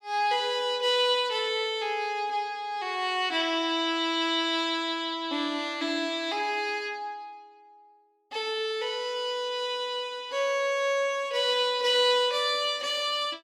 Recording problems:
none

